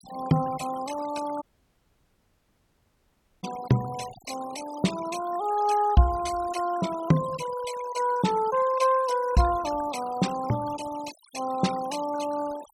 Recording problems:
noise reduction artefacts; signal-to-artefact ratio 15 dB
dropout; at 1.5 s for 2 s

